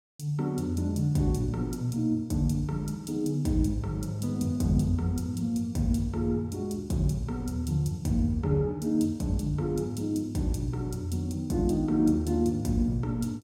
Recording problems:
none

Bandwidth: 16.5 kHz